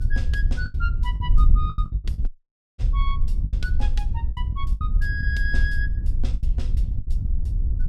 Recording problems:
rumble; below 70 Hz, strongest tone 64 Hz, SNR 2 dB
wind noise; below 60 Hz, SNR -8 dB
lost packets; 9% of the sound replaced, filled with the last packet
audio cutting out; at 2.5 s for 0.5 s

